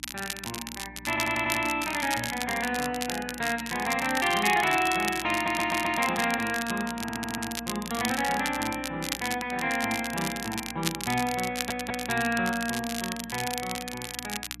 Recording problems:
hum; 60 Hz, harmonics up to 300 Hz, SNR 21 dB
crackle; vinyl, SNR 7 dB
audio stuttering; 4 times, first at 1 s

